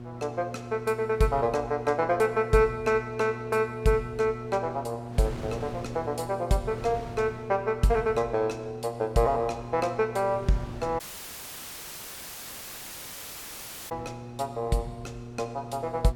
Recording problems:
hum; 60 Hz, harmonics up to 1.1 kHz, SNR 13 dB
wind noise; below 640 Hz, SNR 20 dB
audio cutting out; at 11 s for 3 s

